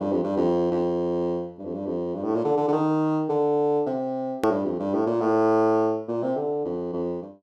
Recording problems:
edit click; at 4.5 s

